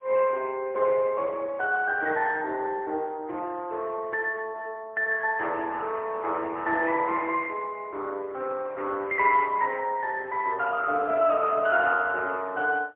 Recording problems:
phone line; 280 Hz to 3.4 kHz, AMR-NB, then MP3

